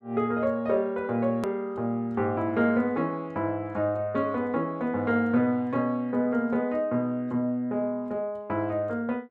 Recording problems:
click at an edit; at 1.5 s

